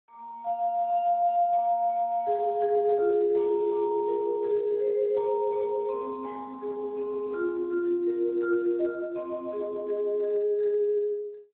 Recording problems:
phone line; 300 Hz to 2.2 kHz, Speex

